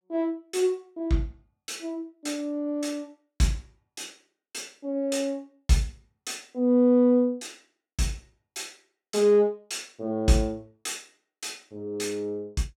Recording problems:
none

